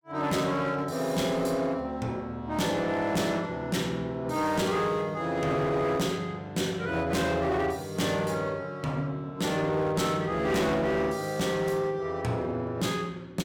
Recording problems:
distortion; hard clipping, signal-to-distortion ratio 11 dB

